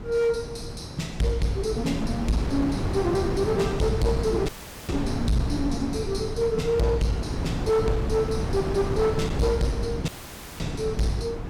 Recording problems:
distorted audio; hard clipping, signal-to-distortion ratio 10 dB
wind noise; below 360 Hz, SNR 5 dB
dropout; at 4.5 s and at 10 s for 0.5 s

